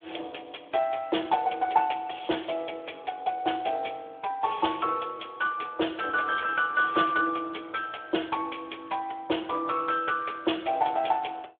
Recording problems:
telephone audio; 300 Hz to 3.6 kHz, Speex

